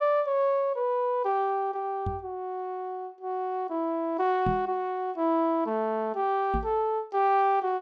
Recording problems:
microphone thump; at 2 s, at 4.5 s and at 6.5 s; peak 0 dB vs average level

